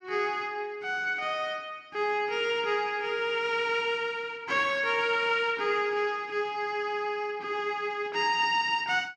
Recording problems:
none

